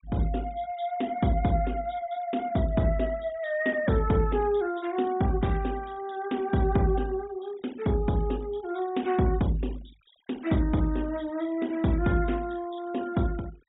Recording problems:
low-pass filter; nothing above 4 kHz
noise reduction artefacts; signal-to-artefact ratio 23 dB

